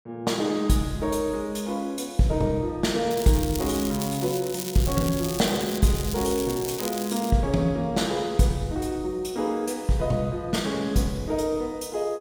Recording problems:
crackle; from 3 to 6 s and from 6 to 7.5 s; loose cable, SNR 9 dB

